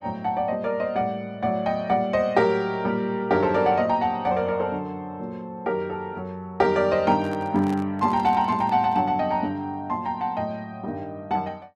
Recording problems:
microphone handling noise; from 7 to 9 s; peak -10 dB vs average level

